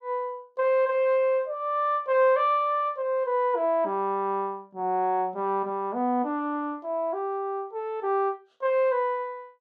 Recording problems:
none

